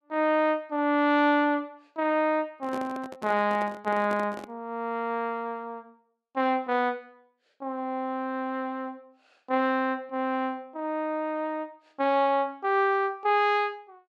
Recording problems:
microphone handling noise; from 2.5 to 4.5 s; peak -7 dB vs average level

